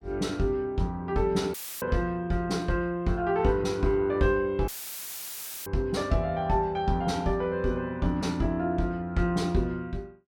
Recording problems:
dropout; at 1.5 s and at 4.5 s for 1 s; filled with static

